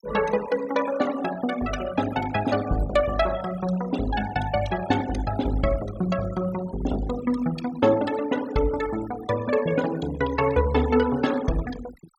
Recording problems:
noise reduction artefacts; signal-to-artefact ratio 14 dB

